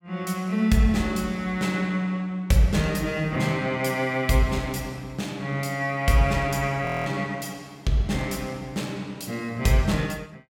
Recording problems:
audio freezing; at 7 s

